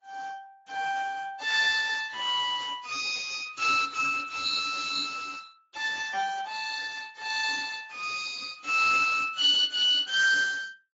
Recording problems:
lossy compression; Speex, then AAC, log-spectral distance 6 dB, nothing above 7.3 kHz
static burst; at 2.5 s; peak -17 dB vs average level

